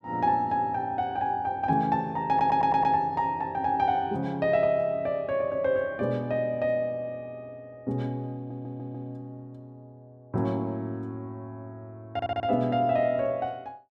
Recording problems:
stutter; at 2.5 s, at 8.5 s and at 12 s

